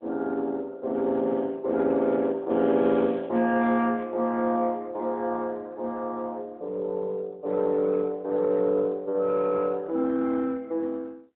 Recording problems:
phone line; 190 Hz to 3.5 kHz, AMR-NB

